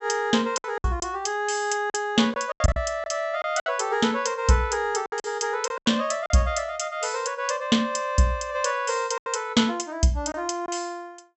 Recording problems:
treble missing; nothing above 7.8 kHz
lost packets; 7% of the sound replaced, filled with silence

